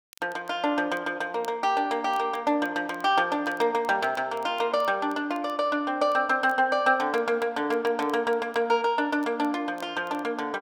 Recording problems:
crackle; vinyl, SNR 30 dB

